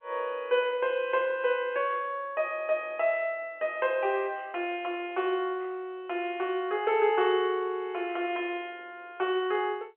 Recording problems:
phone line; 280 Hz to 3.3 kHz, G.711

